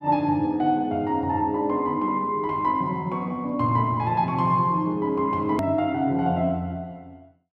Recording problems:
edit click; at 5.5 s

